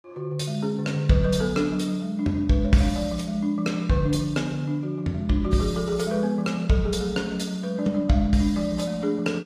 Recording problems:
lossy compression; AAC, log-spectral distance 2 dB, nothing above 14.7 kHz

